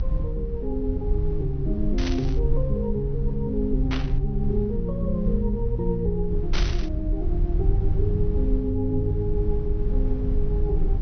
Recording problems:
treble missing; nothing above 6.1 kHz
rumble; below 62 Hz, SNR 0 dB
static burst; at 2 s, at 4 s and at 6.5 s; peak +2 dB vs average level

